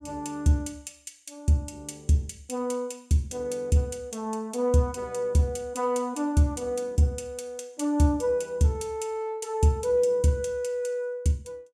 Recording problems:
none

